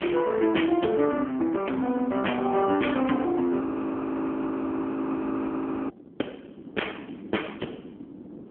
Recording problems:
telephone audio; 220 Hz to 3.2 kHz, AMR-NB
wind on the microphone; below 370 Hz, SNR 19 dB
frozen audio; at 3.5 s for 2.5 s

